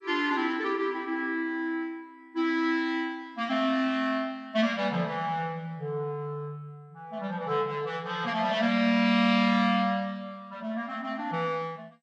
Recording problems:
lossy compression; MP2, log-spectral distance 2 dB

